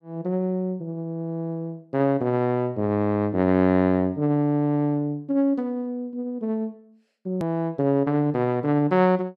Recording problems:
hard cut with a click; at 7.5 s

